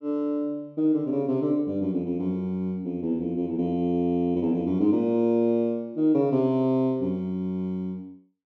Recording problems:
none

